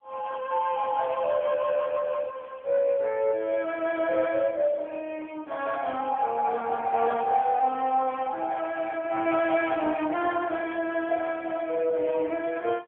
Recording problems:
telephone audio; 280 Hz to 3.3 kHz, AMR-NB

